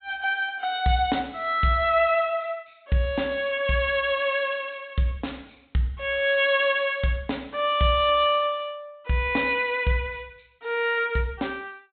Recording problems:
treble missing; nothing above 4 kHz

